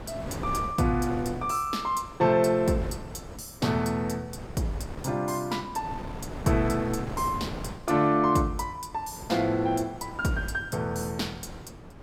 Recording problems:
wind noise; below 560 Hz, SNR 12 dB

